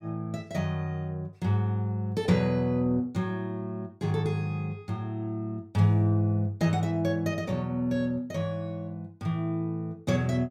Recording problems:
none

